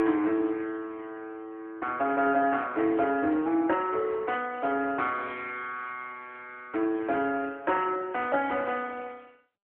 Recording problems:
phone line; 260 Hz to 3.3 kHz, AMR-NB

